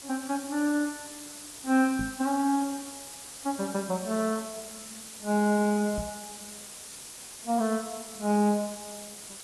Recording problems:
lossy compression; AAC, log-spectral distance 15 dB
background hiss; slope 0 dB per octave, SNR 12 dB
microphone bump; at 2 s and at 6 s; peak -3 dB vs average level

